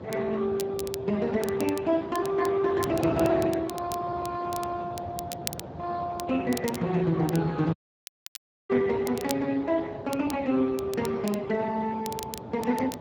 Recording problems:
lossy codec; Speex, log-spectral distance 3 dB
wind on the microphone; below 700 Hz, SNR 11 dB
crackle; vinyl, SNR 14 dB
dropout; at 7.5 s for 1 s

